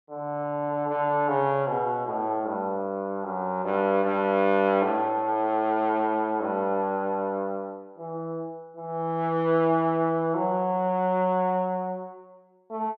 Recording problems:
none

